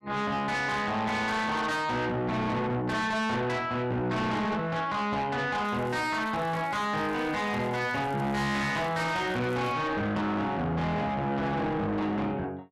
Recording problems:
distorted audio; soft clipping, signal-to-distortion ratio 7 dB
crackle; from 5.5 to 9.5 s; loose cable, SNR 25 dB

